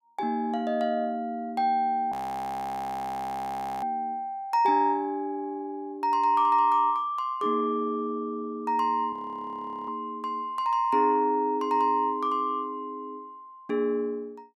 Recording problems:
frozen audio; at 2 s for 1.5 s and at 9 s for 1 s

